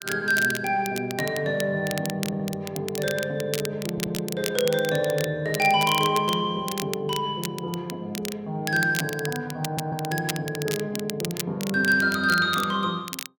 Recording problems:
crackle; vinyl, SNR 10 dB
audio stuttering; at 2 s, at 4 s and at 9.5 s

